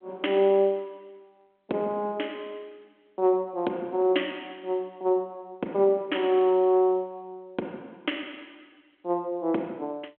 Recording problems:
phone line; 260 Hz to 3.3 kHz, G.726

